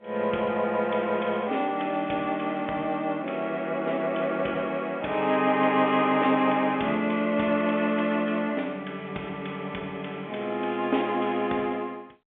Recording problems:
telephone audio; 300 Hz to 3.5 kHz, G.711

